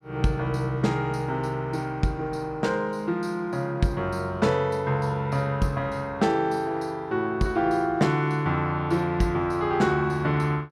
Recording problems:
none

